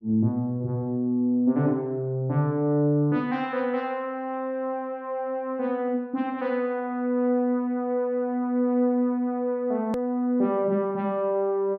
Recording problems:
edit click; at 10 s

